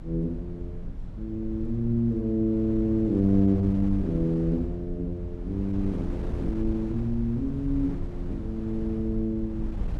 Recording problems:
low-frequency rumble; below 76 Hz, SNR 13 dB
wind noise; below 130 Hz, SNR 10 dB

